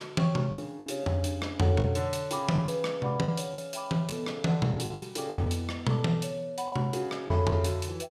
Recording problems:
lost packets; 8% of the sound replaced, filled with the last packet

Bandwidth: 15 kHz